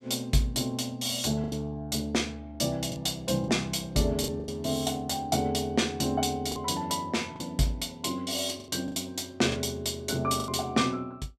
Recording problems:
packet loss; 6% of the sound replaced, filled with the last packet

